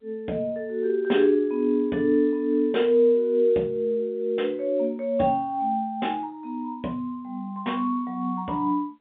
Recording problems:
phone line; 190 Hz to 3.6 kHz, G.711

